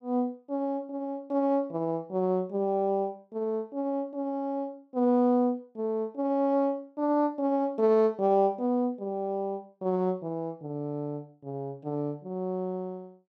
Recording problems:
none

